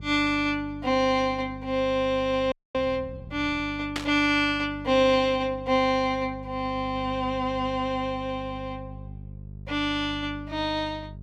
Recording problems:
hum; 50 Hz, harmonics up to 450 Hz, SNR 15 dB
frozen audio; at 2.5 s
static burst; at 4 s; peak 0 dB vs average level

